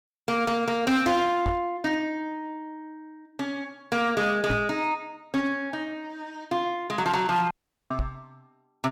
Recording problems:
distorted audio; hard clipping, uneven, signal-to-distortion ratio 12 dB
microphone bump; at 1.5 s, at 4.5 s and at 8 s; peak +2 dB vs average level
dropout; at 7.5 s

